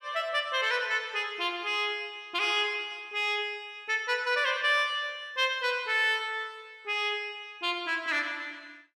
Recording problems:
none

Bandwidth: 14.5 kHz